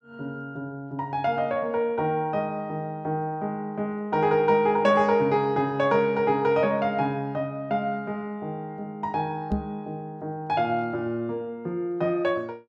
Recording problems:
microphone bump; at 9.5 s; peak +3 dB vs average level

